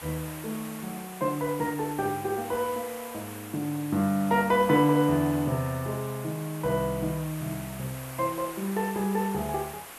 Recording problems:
background hiss; SNR 13 dB

